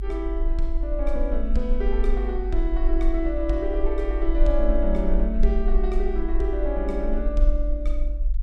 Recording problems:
low-frequency rumble; below 46 Hz, SNR -1 dB

